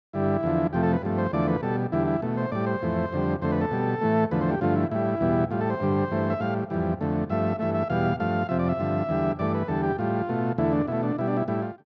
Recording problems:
none

